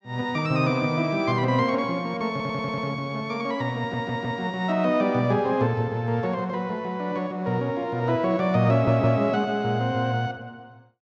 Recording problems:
stutter; at 2.5 s, at 4 s and at 8.5 s

